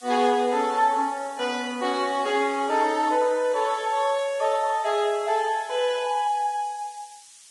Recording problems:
lossy compression; Vorbis, log-spectral distance 6 dB
background hiss; slope +6 dB per octave, SNR 22 dB

